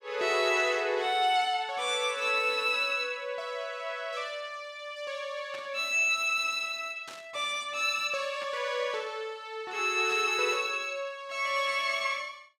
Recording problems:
burst of static; 4 times, first at 5.5 s; peak -11 dB vs average level

